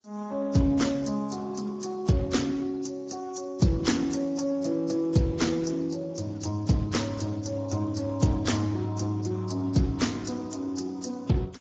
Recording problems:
lossy codec; Vorbis, then Speex, log-spectral distance 4 dB

